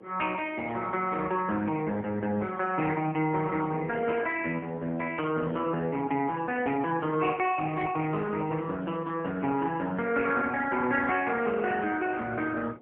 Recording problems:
telephone audio; 190 Hz to 3.1 kHz, AMR-NB, then MP3
wind on the microphone; below 610 Hz, SNR 21 dB

